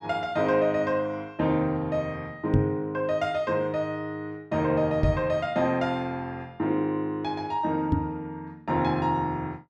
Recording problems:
microphone bump; at 2.5 s, at 5 s and at 8 s; peak +7 dB vs average level

